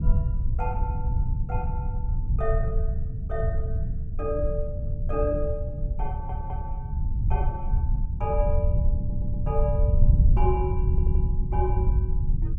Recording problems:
rumble; below 88 Hz, SNR -6 dB
stutter; at 6 s, at 9 s and at 11 s

